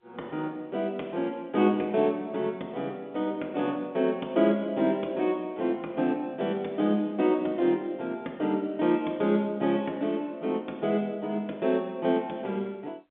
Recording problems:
telephone audio; 220 Hz to 3.7 kHz, G.711

